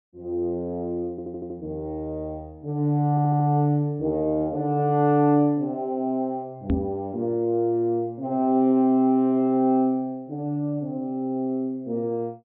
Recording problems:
low-pass filter; nothing above 4 kHz
audio stuttering; at 1 s and at 3 s
knock on the microphone; at 6.5 s; peak +4 dB vs average level

